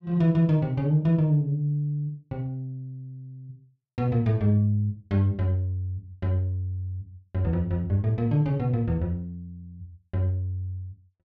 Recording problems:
none

